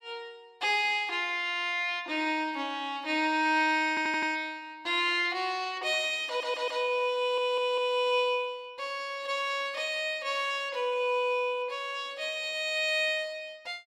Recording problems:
audio stuttering; at 4 s, at 6.5 s and at 7 s

